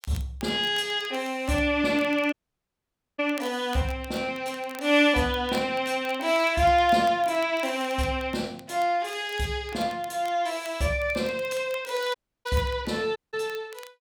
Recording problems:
crackle; vinyl, SNR 23 dB
audio cutting out; at 2.5 s for 1 s, at 12 s and at 13 s

